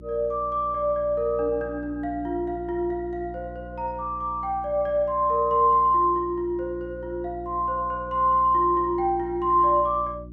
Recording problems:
mains hum; 60 Hz, harmonics up to 360 Hz, SNR 17 dB

